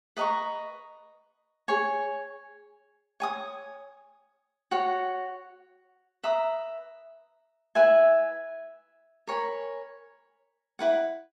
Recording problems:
none

